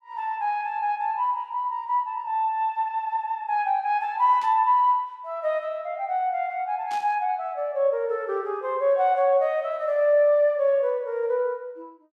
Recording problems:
burst of static; at 4.5 s and at 7 s; peak -14 dB vs average level

